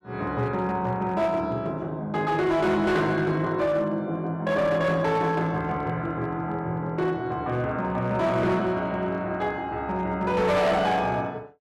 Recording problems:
distorted audio; hard clipping, uneven, signal-to-distortion ratio 11 dB

